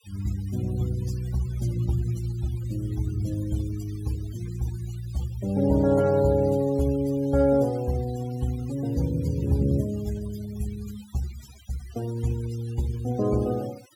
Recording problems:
noise reduction artefacts; signal-to-artefact ratio 19 dB

